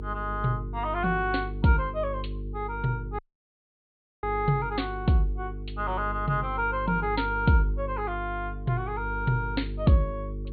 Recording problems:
low-pass filter; nothing above 4.4 kHz
electrical hum; 50 Hz, harmonics up to 450 Hz, SNR 8 dB
dropout; at 3 s for 1 s

